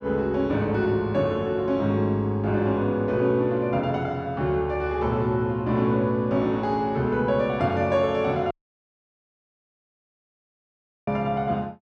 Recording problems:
audio cutting out; at 8.5 s for 2.5 s

